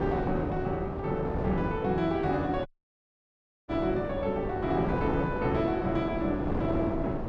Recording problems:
wind noise; below 550 Hz, SNR 4 dB
audio cutting out; at 2.5 s for 1 s

